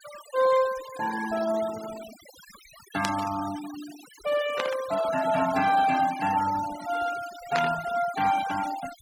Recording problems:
noise reduction artefacts; signal-to-artefact ratio 14 dB
burst of static; at 3 s, at 4.5 s and at 7.5 s; peak +2 dB vs average level

